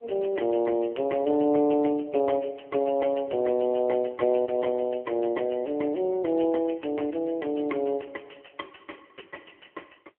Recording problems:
telephone audio; 260 Hz to 3.2 kHz, AMR-NB

